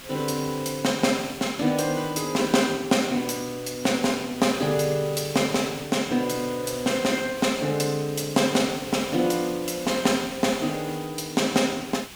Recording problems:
hiss; slope -1 dB per octave, SNR 15 dB

